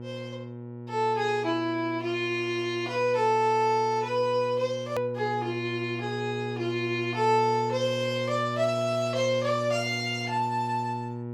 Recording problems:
electrical hum; 60 Hz, harmonics up to 960 Hz, SNR 9 dB
hard cut with a click; at 5 s

